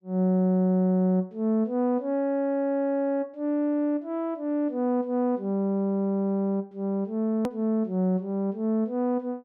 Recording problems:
hard cut with a click; at 7.5 s

